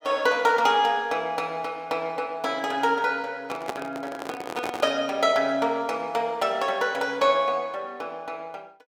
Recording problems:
handling noise; from 3.5 to 5 s; peak -1 dB vs average level

